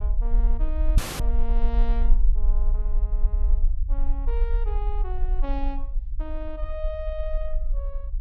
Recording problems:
rumble; below 42 Hz, strongest tone 22 Hz, SNR -11 dB
audio cutting out; at 1 s

